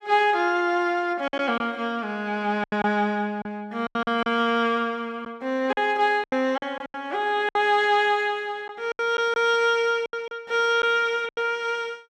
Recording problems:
lost packets; 8% of the sound replaced, filled with silence

